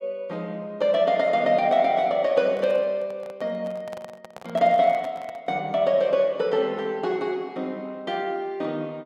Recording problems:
microphone handling noise; from 2.5 to 5.5 s; peak -9 dB vs average level

